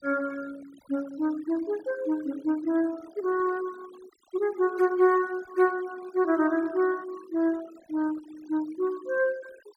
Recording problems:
denoising artefacts; signal-to-artefact ratio 22 dB

